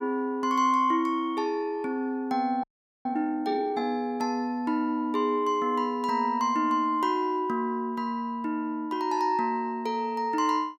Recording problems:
frozen audio; at 2.5 s

